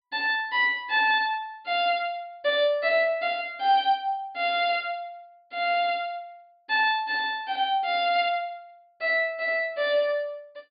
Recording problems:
low-pass filter; nothing above 4.9 kHz

